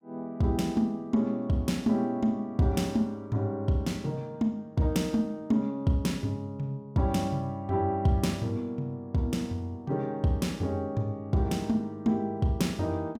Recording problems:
none

